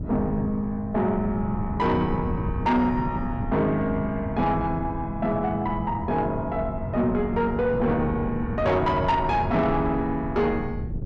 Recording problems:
distortion; soft clipping, signal-to-distortion ratio 12 dB
wind noise; below 200 Hz, SNR 8 dB

